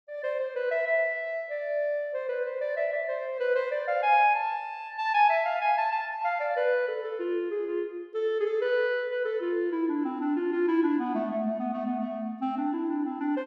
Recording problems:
none

